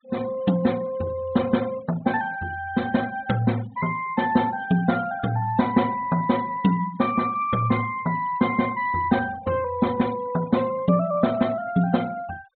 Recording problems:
low-pass filter; nothing above 4 kHz
denoising artefacts; signal-to-artefact ratio 21 dB

